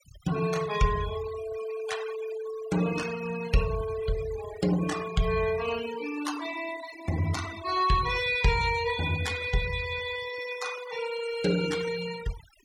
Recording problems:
denoising artefacts; signal-to-artefact ratio 11 dB

